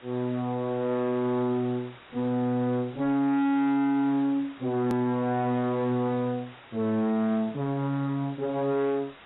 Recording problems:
lossy compression; AAC, log-spectral distance 6 dB, nothing above 13.1 kHz
distortion; soft clipping, signal-to-distortion ratio 6 dB
hiss; SNR 22 dB
click at an edit; at 5 s

